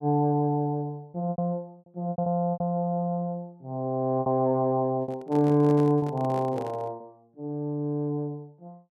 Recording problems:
packet loss; 6% of the sound replaced, filled with repeated pitch periods
microphone handling noise; from 5 to 7 s; peak -7 dB vs average level

